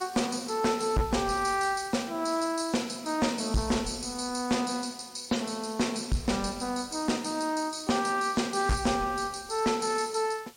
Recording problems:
lossy compression; MP3, log-spectral distance 7 dB
distortion; hard clipping, uneven, signal-to-distortion ratio 11 dB
background hiss; slope 0 dB per octave, SNR 23 dB

